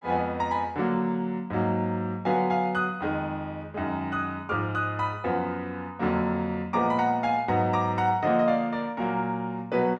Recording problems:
none

